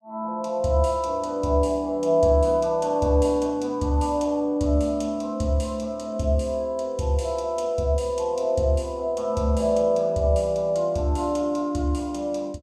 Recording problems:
none

